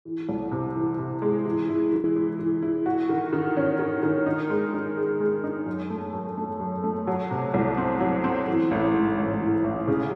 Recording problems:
packet loss; 0.8% of the sound replaced, filled with the last packet

